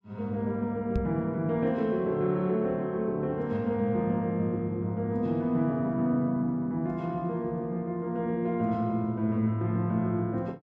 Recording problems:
microphone thump; at 1 s; peak +1 dB vs average level

